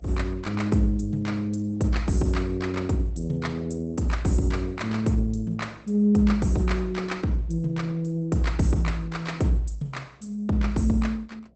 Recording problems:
codec artefacts; Opus, log-spectral distance 3 dB, nothing above 8.2 kHz
electrical hum; 60 Hz, harmonics up to 720 Hz, SNR 29 dB

